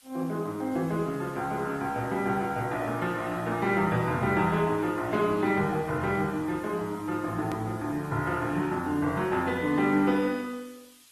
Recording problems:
codec artefacts; Opus, log-spectral distance 4 dB, nothing above 13.1 kHz
hiss; slope +2 dB per octave, SNR 27 dB
click at an edit; at 7.5 s

